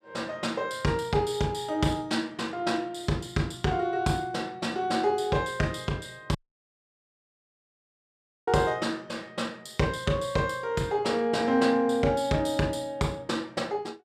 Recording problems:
audio cutting out; at 6.5 s for 2 s

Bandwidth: 14.5 kHz